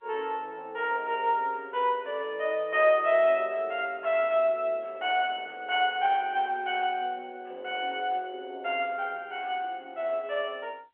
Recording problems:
telephone audio; 340 Hz to 3.3 kHz, G.711

